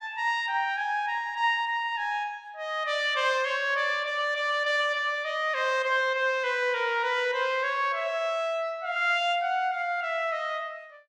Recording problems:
none

